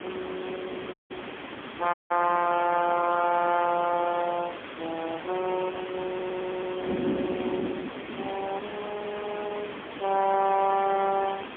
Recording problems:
phone line; 240 Hz to 3.3 kHz, AMR-NB, then MP3
hiss; SNR 10 dB
wind on the microphone; below 380 Hz, SNR 11 dB
audio cutting out; at 1 s and at 2 s
audio stuttering; at 6 s

